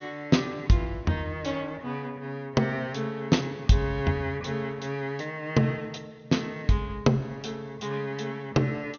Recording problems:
low-pass filter; nothing above 6.5 kHz

